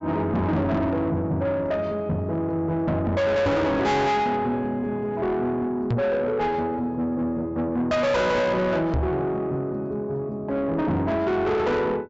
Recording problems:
treble cut off; nothing above 8 kHz
distortion; soft clipping, signal-to-distortion ratio 6 dB
knock on the microphone; at 3.5 s, at 6 s and at 9 s; peak +8 dB vs average level

